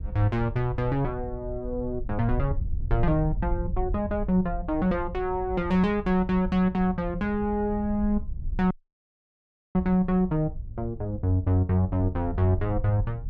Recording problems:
low-frequency rumble; below 72 Hz, SNR 9 dB
audio cutting out; at 8.5 s for 1 s

